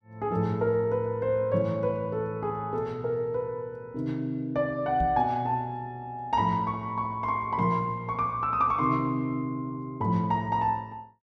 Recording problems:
microphone thump; at 5 s; peak -1 dB vs average level

